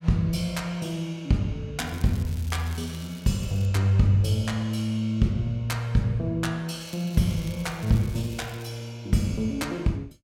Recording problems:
crackle; from 2 to 3.5 s and from 7 to 8.5 s; loose cable, SNR 21 dB

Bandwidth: 16 kHz